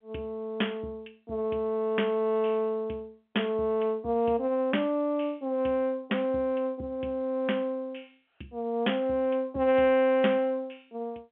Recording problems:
phone line; 220 Hz to 3.3 kHz, G.711

